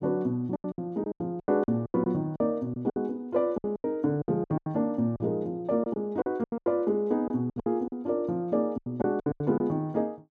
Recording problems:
lost packets; 16% of the sound replaced, filled with silence

